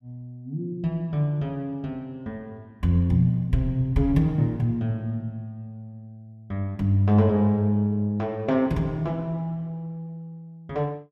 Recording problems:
none

